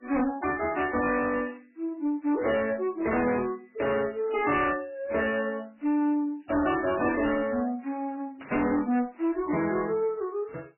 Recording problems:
lossy compression; AAC, then MP3, log-spectral distance 4 dB, nothing above 2.7 kHz
distorted audio; hard clipping, uneven, signal-to-distortion ratio 10 dB
static burst; 4 times, first at 1.5 s; peak -14 dB vs average level

